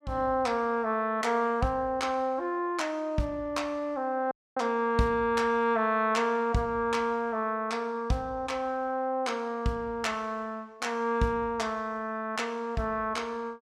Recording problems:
audio cutting out; at 4.5 s

